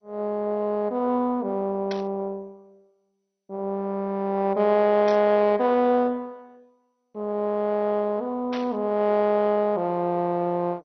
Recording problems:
codec artefacts; MP2, log-spectral distance 2 dB, nothing above 5.7 kHz
burst of static; at 2 s, at 5 s and at 8.5 s; peak -8 dB vs average level

